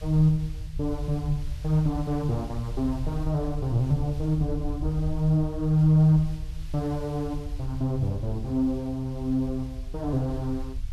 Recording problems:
background hiss; slope +1 dB per octave, SNR 26 dB
low-frequency rumble; below 70 Hz, SNR 10 dB

